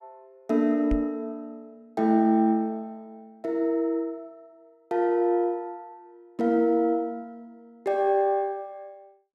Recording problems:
microphone thump; at 1 s; peak -2 dB vs average level

